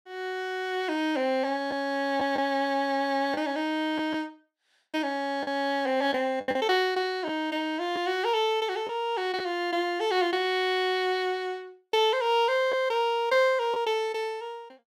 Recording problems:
packet loss; 2% of the sound replaced, filled with the last packet

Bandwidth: 16 kHz